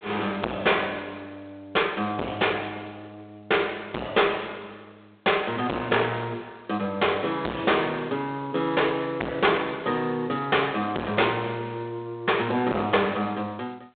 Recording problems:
telephone audio; 260 Hz to 3.7 kHz, G.726
distortion; soft clipping, signal-to-distortion ratio 5 dB

